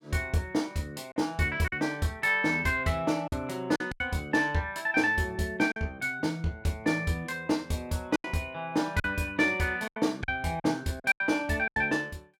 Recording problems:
lost packets; 6% of the sound replaced, filled with silence

